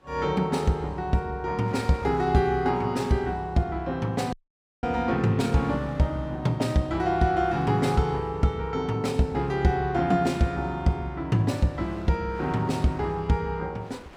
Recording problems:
wind on the microphone; below 1.7 kHz, SNR 25 dB
audio cutting out; at 4.5 s for 0.5 s

